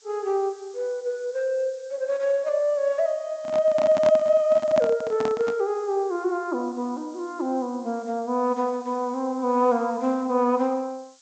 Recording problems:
low-pass filter; nothing above 8 kHz
background hiss; SNR 28 dB
microphone handling noise; from 3.5 to 5.5 s; peak -2 dB vs average level

